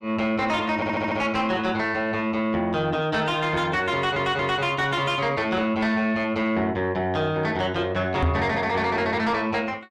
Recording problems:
distortion; soft clipping, signal-to-distortion ratio 12 dB
audio stuttering; at 1 s and at 4 s
knock on the microphone; at 8 s; peak +4 dB vs average level

